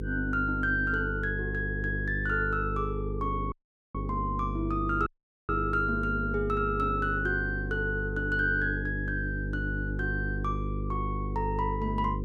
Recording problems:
hum; 50 Hz, harmonics up to 500 Hz, SNR 4 dB
dropout; at 3.5 s and at 5 s

